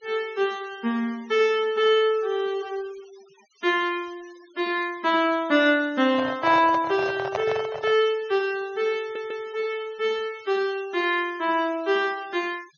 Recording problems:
low-pass filter; nothing above 6.6 kHz
denoising artefacts; signal-to-artefact ratio 24 dB
microphone handling noise; from 6 to 8 s; peak 0 dB vs average level
stutter; at 9 s

